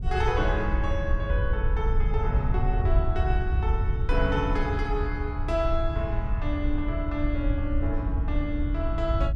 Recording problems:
wind noise; below 76 Hz, SNR -2 dB

